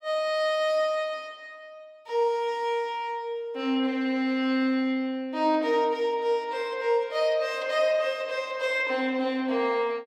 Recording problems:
none

